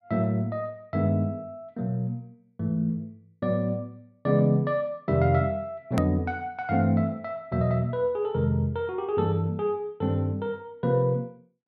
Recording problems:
hard cut with a click; at 6 s

